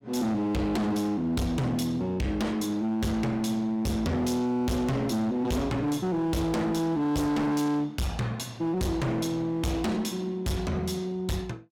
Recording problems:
distortion; hard clipping, signal-to-distortion ratio 6 dB

